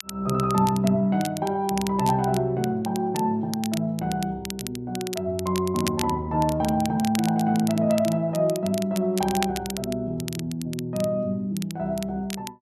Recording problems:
crackling; vinyl, SNR 12 dB

